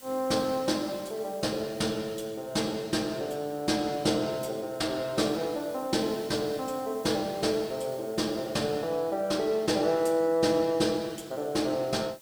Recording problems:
hiss; slope -1 dB per octave, SNR 22 dB

